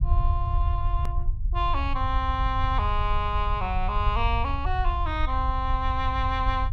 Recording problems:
rumble; below 72 Hz, SNR 0 dB
edit click; at 1 s

